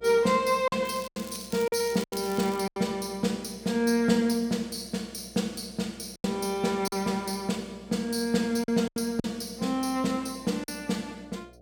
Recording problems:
hum; 60 Hz, harmonics up to 720 Hz, SNR 26 dB
lost packets; 6% of the sound replaced, filled with silence
crackling; from 1 to 2.5 s; loose cable, SNR 16 dB

